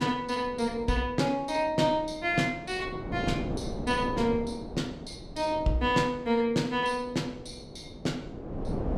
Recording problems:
wind noise; below 450 Hz, SNR 11 dB

